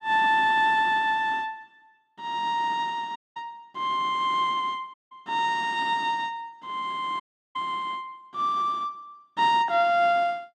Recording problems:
audio cutting out; at 3 s, at 5 s and at 7 s

